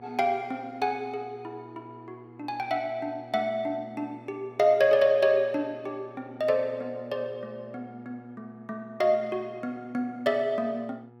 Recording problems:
hum; 60 Hz, harmonics up to 1.3 kHz, SNR 22 dB

